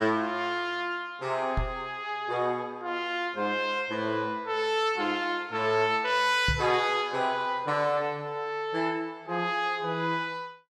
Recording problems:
microphone thump; at 1.5 s and at 6.5 s; peak +2 dB vs average level

